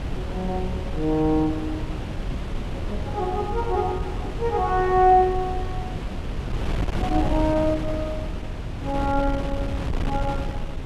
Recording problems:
wind noise; below 200 Hz, SNR 5 dB

